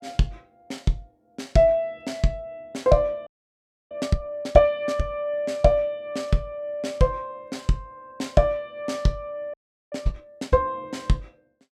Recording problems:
frozen audio; at 3.5 s for 0.5 s and at 9.5 s

